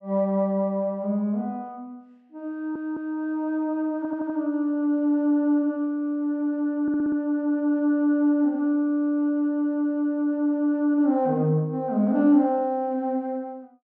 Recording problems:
stutter; at 2.5 s, at 4 s and at 7 s

